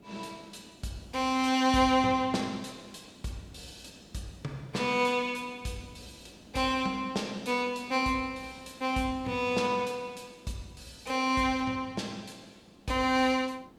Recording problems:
background hiss; slope -7 dB per octave, SNR 26 dB

